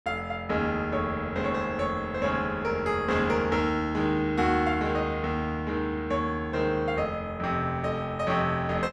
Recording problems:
none

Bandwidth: 12 kHz